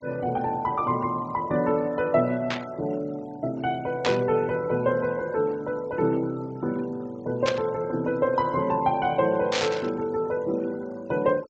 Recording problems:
treble missing; nothing above 8 kHz
noise reduction artefacts; signal-to-artefact ratio 23 dB
burst of static; 4 times, first at 2.5 s; peak +3 dB vs average level

